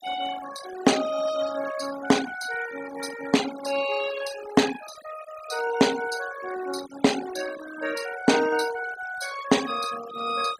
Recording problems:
noise reduction artefacts; signal-to-artefact ratio 12 dB

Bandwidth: 15.5 kHz